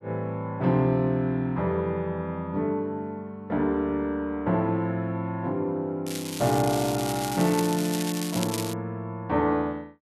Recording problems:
crackle; from 6 to 8.5 s; loose cable, SNR 8 dB

